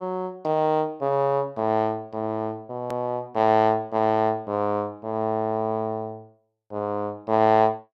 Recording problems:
hard cut with a click; at 3 s

